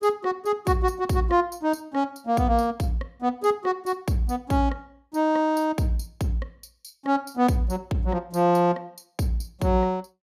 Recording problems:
none

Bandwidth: 15.5 kHz